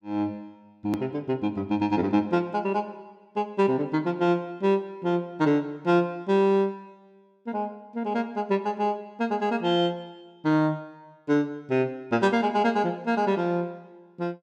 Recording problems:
hard cut with a click; at 1 s

